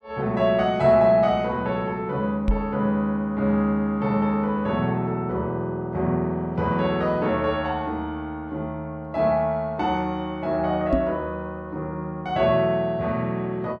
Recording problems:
microphone bump; at 2.5 s and at 11 s; peak +4 dB vs average level

